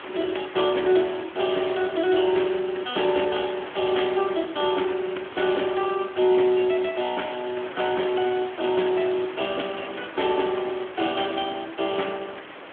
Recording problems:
telephone audio; 220 Hz to 3.5 kHz, Speex
background hiss; SNR 14 dB

